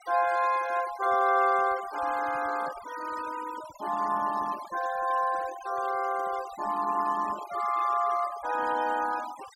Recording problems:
noise reduction artefacts; signal-to-artefact ratio 16 dB

